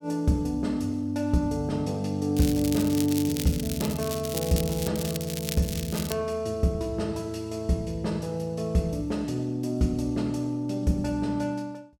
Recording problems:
crackle; from 2.5 to 5 s and from 5 to 6 s; loose cable, SNR 8 dB

